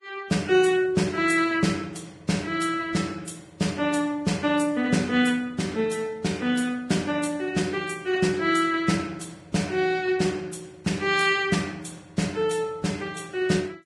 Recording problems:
lossy codec; Vorbis, log-spectral distance 4 dB, nothing above 11 kHz

